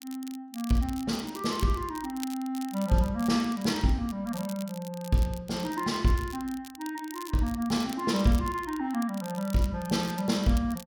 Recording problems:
crackling; vinyl, SNR 17 dB

